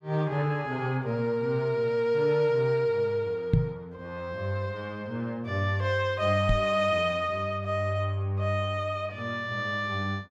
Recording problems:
knock on the microphone; at 3.5 s and at 6.5 s; peak +9 dB vs average level

